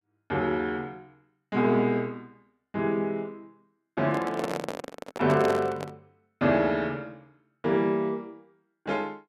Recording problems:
handling noise; from 4 to 6 s; peak 0 dB vs average level

